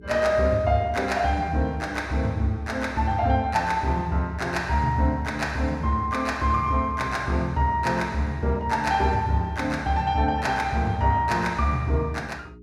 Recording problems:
electrical hum; 60 Hz, harmonics up to 420 Hz, SNR 23 dB

